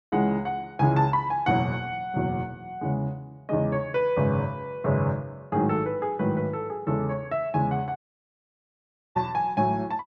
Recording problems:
dropout; at 8 s for 1 s

